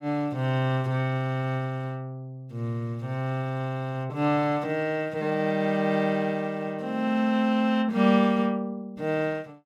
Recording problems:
none

